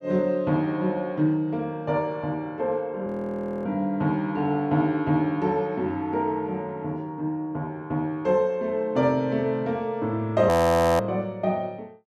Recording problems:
audio freezing; at 3 s for 0.5 s and at 10 s for 0.5 s

